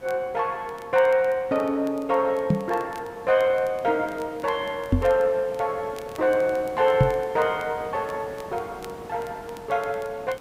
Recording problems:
hiss; slope -7 dB per octave, SNR 19 dB
crackle; vinyl, SNR 27 dB
knock on the microphone; at 2.5 s, at 5 s and at 7 s; peak +8 dB vs average level

